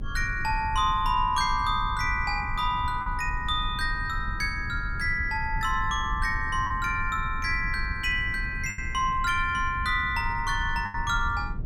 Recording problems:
rumble; below 82 Hz, SNR 9 dB
packet loss; 2% of the sound replaced, filled with the last packet

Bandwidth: 17.5 kHz